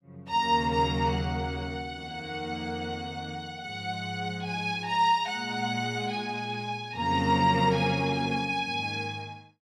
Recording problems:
none

